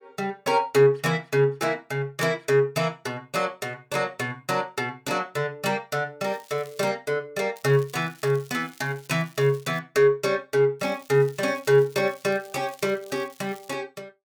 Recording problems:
crackling; at 6.5 s, from 7.5 to 10 s and from 11 to 14 s; loose cable, SNR 25 dB

